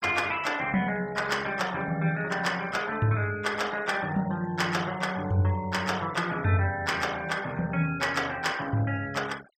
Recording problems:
denoising artefacts; signal-to-artefact ratio 19 dB

